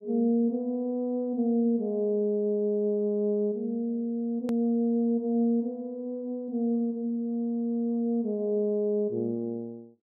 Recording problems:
hard cut with a click; at 4.5 s

